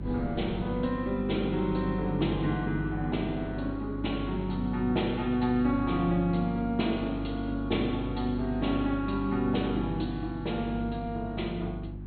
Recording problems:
treble cut off; nothing above 4.3 kHz
hum; 50 Hz, harmonics up to 350 Hz, SNR 8 dB
wind noise; below 310 Hz, SNR 21 dB

